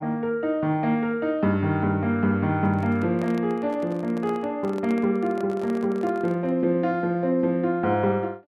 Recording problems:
microphone handling noise; from 2.5 to 6.5 s; peak -10 dB vs average level

